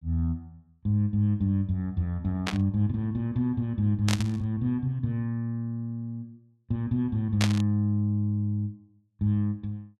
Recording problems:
burst of static; at 2.5 s, at 4 s and at 7.5 s; peak +3 dB vs average level

